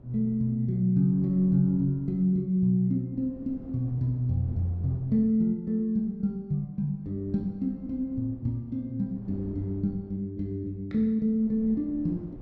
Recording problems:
wind on the microphone; below 260 Hz, SNR 21 dB

